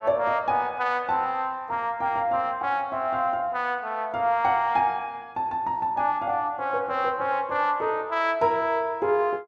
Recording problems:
none

